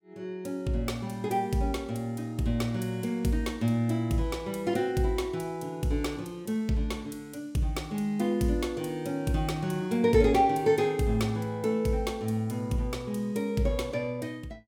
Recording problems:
none

